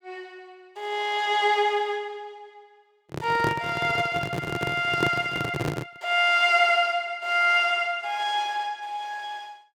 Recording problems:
handling noise; from 3 to 6 s; peak +2 dB vs average level

